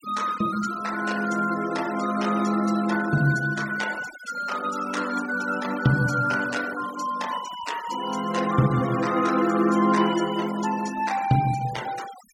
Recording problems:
denoising artefacts; signal-to-artefact ratio 15 dB

